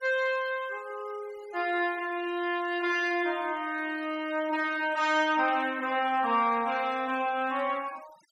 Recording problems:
denoising artefacts; signal-to-artefact ratio 22 dB

